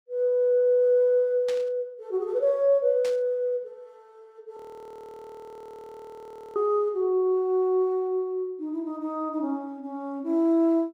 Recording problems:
static burst; at 1.5 s and at 3 s; peak -10 dB vs average level
audio freezing; at 4.5 s for 2 s

